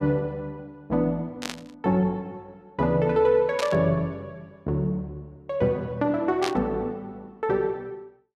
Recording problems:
burst of static; at 1.5 s, at 3.5 s and at 6.5 s; peak -1 dB vs average level

